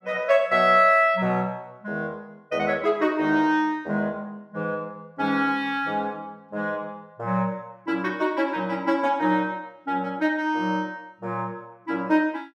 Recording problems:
none

